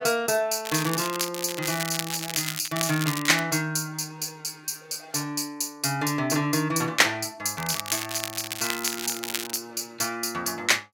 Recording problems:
crackling; from 0.5 to 3.5 s and from 7.5 to 9.5 s; loose cable, SNR 5 dB

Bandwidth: 16.5 kHz